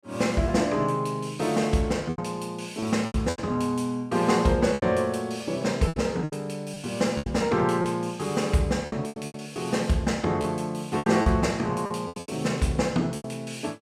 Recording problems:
packet loss; 9% of the sound replaced, filled with repeated pitch periods

